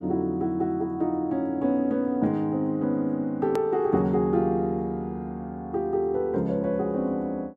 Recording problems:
edit click; at 3.5 s

